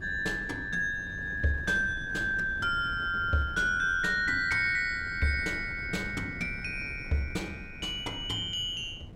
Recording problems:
wind noise; below 200 Hz, SNR 15 dB

